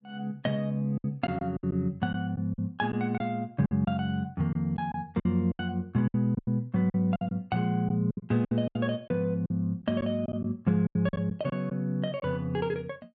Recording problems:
packet loss; 10% of the sound replaced, filled with silence

